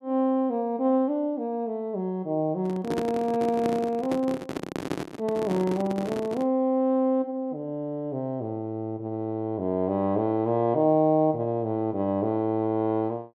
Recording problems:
handling noise; from 2.5 to 6.5 s; peak +1 dB vs average level

